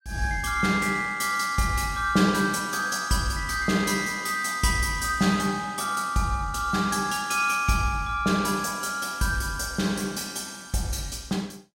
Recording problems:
none

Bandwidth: 16 kHz